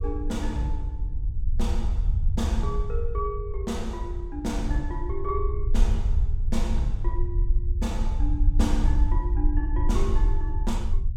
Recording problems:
low-frequency rumble; below 60 Hz, SNR -4 dB

